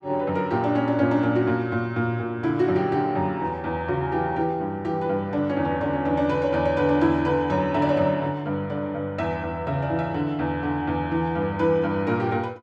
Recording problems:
none

